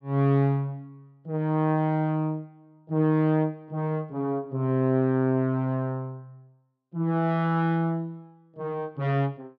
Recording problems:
none

